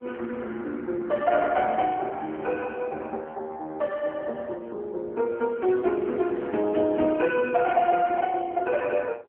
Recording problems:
telephone audio; 260 Hz to 3.5 kHz, AMR-NB

